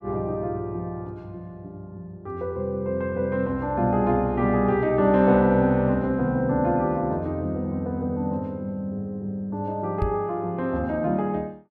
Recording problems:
microphone thump; at 10 s; peak +1 dB vs average level

